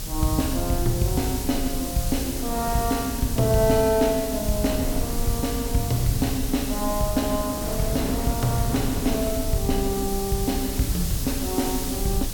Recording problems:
hiss; slope +2 dB per octave, SNR 7 dB
low-frequency rumble; below 66 Hz, strongest tone 26 Hz, SNR 10 dB
wind on the microphone; below 490 Hz, SNR 12 dB

